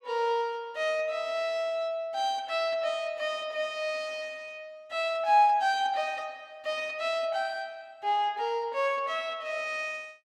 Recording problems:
none

